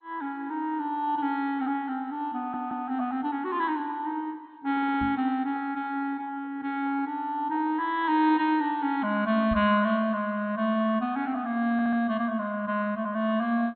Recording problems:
lossy codec; MP2, log-spectral distance 2 dB, nothing above 3.8 kHz
audio stuttering; at 2.5 s, at 4.5 s and at 12 s
knock on the microphone; at 5 s and at 9.5 s; peak -3 dB vs average level

